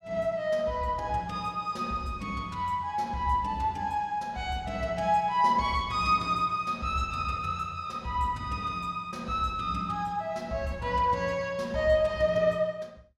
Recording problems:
none

